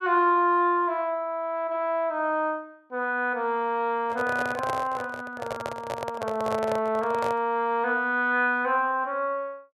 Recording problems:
handling noise; from 4 to 7.5 s; peak -2 dB vs average level

